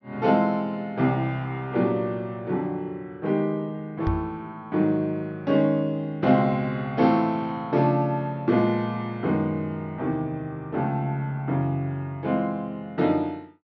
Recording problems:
treble cut off; nothing above 6 kHz
microphone bump; at 4 s; peak +1 dB vs average level

